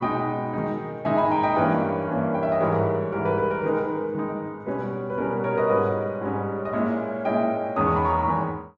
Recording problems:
none

